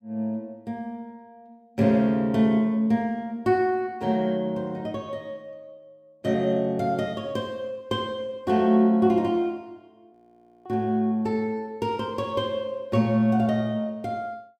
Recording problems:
frozen audio; at 10 s for 0.5 s

